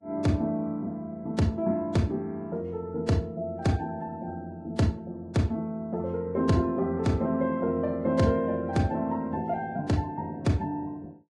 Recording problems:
lossy codec; Vorbis, log-spectral distance 2 dB, nothing above 10.7 kHz

